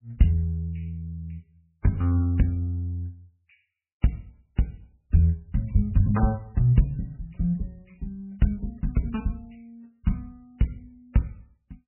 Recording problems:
lossy codec; MP3, log-spectral distance 4 dB, nothing above 2.8 kHz

